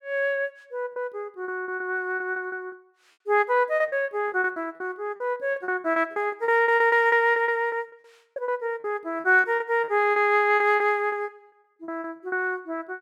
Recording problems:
packet loss; 16% of the sound replaced, filled with repeated pitch periods

